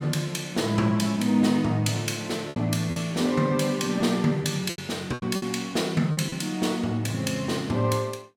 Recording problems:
packet loss; 5% of the sound replaced, filled with repeated pitch periods

